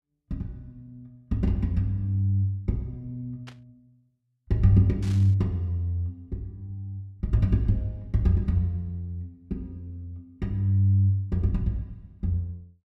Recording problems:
static burst; at 3.5 s and at 5 s; peak -14 dB vs average level

